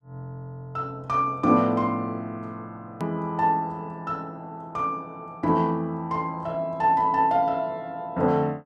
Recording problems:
edit click; at 3 s

